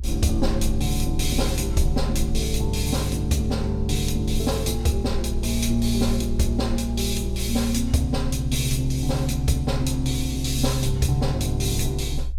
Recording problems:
rumble; below 62 Hz, strongest tone 60 Hz, SNR 5 dB

